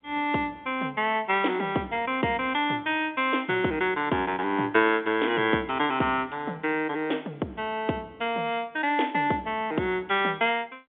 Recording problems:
telephone audio; 150 Hz to 3.6 kHz, G.711

